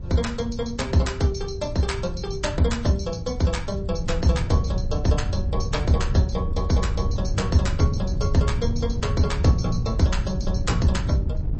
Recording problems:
lossy codec; MP3, log-spectral distance 3 dB, nothing above 8.2 kHz
wind on the microphone; below 110 Hz, SNR 4 dB

